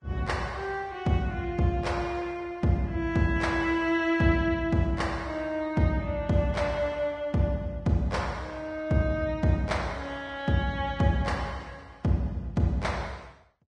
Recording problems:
codec artefacts; Vorbis, log-spectral distance 2 dB, nothing above 10.1 kHz

